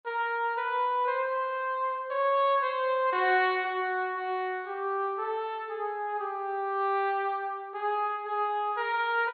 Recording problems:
treble cut off; nothing above 4.3 kHz

